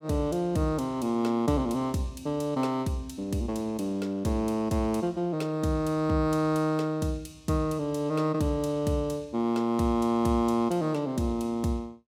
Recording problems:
none

